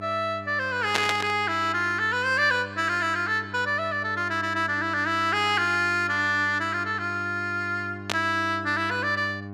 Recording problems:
hum; 50 Hz, harmonics up to 1.5 kHz, SNR 15 dB
burst of static; at 1 s and at 8 s; peak +4 dB vs average level

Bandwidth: 14.5 kHz